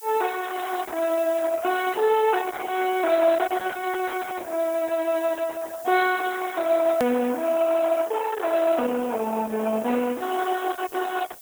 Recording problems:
codec artefacts; Opus, log-spectral distance 4 dB
hiss; slope +3 dB per octave, SNR 19 dB
edit click; at 7 s

